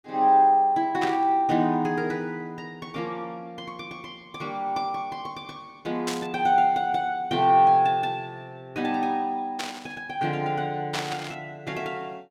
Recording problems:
static burst; 4 times, first at 1 s; peak -1 dB vs average level

